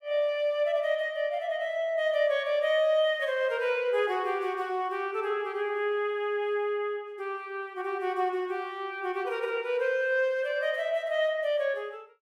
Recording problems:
none

